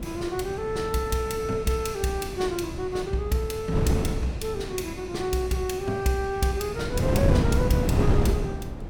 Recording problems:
wind on the microphone; below 260 Hz, SNR 1 dB

